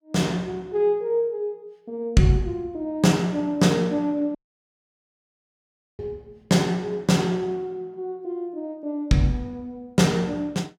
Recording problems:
audio cutting out; at 4.5 s for 1.5 s

